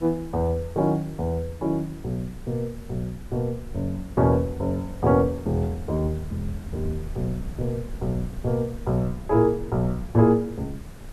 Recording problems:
hiss; slope -4 dB per octave, SNR 24 dB
rumble; below 100 Hz, SNR 15 dB

